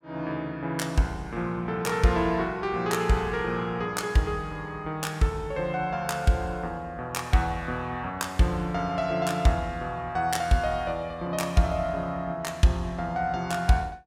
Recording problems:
none

